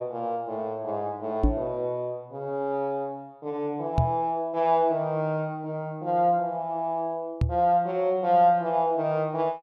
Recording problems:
microphone thump; at 1.5 s, at 4 s and at 7.5 s; peak +7 dB vs average level

